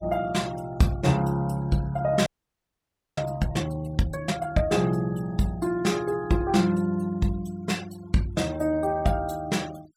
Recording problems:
denoising artefacts; signal-to-artefact ratio 23 dB
audio freezing; at 2.5 s for 1 s

